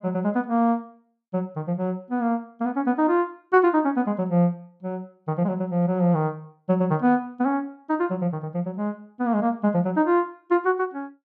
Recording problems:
none

